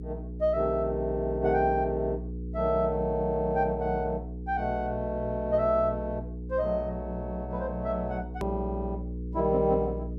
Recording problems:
hum; 60 Hz, harmonics up to 480 Hz, SNR 8 dB
click at an edit; at 8.5 s

